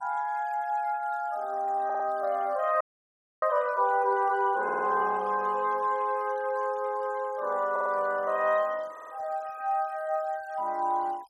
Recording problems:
denoising artefacts; signal-to-artefact ratio 27 dB
stutter; 4 times, first at 2 s
audio freezing; at 3 s for 0.5 s

